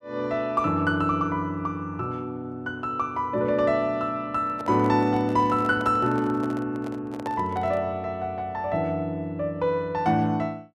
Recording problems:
handling noise; from 4.5 to 8 s; peak -6 dB vs average level

